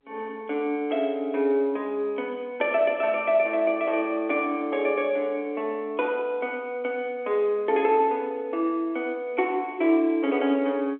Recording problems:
telephone audio; 240 Hz to 3.4 kHz, G.711

